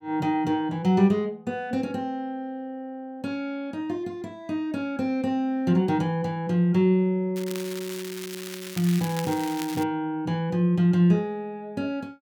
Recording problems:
crackling; from 7.5 to 10 s; loose cable, SNR 12 dB

